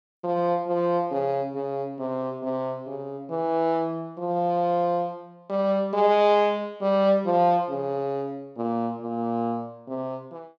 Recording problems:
none

